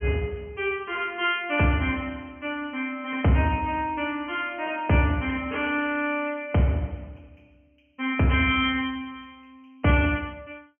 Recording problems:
treble cut off; nothing above 3.2 kHz

